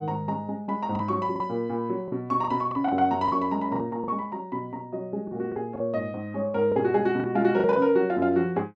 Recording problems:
lost packets; 7% of the sound replaced, filled with the last packet

